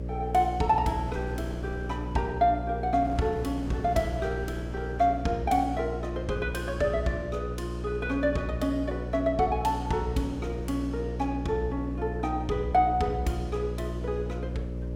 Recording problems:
hum; 60 Hz, harmonics up to 600 Hz, SNR 6 dB
wind noise; below 510 Hz, SNR 19 dB

